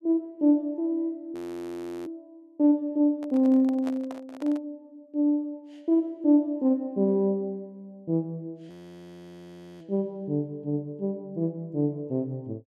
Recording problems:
audio freezing; at 1.5 s for 0.5 s and at 8.5 s for 1 s
microphone handling noise; from 3 to 4.5 s; peak -8 dB vs average level

